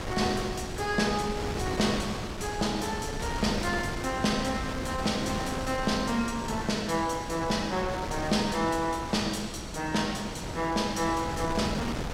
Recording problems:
wind noise; below 1.1 kHz, SNR 6 dB

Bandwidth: 16 kHz